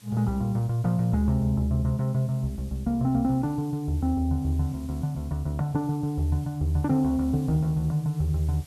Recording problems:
background hiss; slope 0 dB per octave, SNR 27 dB

